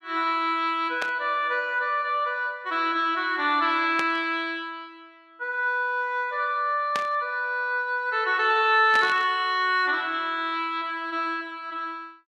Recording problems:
burst of static; 4 times, first at 1 s; peak -2 dB vs average level

